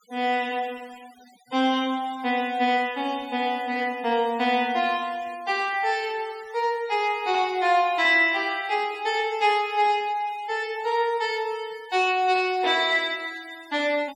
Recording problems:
noise reduction artefacts; signal-to-artefact ratio 23 dB

